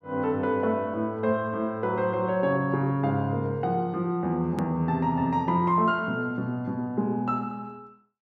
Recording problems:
click at an edit; at 4.5 s

